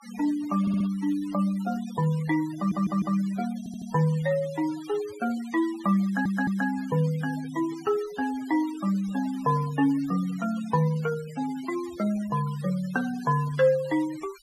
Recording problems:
noise reduction artefacts; signal-to-artefact ratio 18 dB
stutter; 4 times, first at 0.5 s

